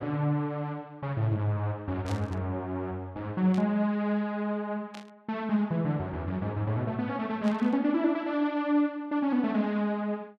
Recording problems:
burst of static; 4 times, first at 2 s; peak -10 dB vs average level

